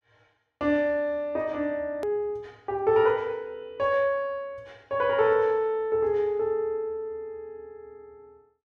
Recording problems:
hard cut with a click; at 2 s

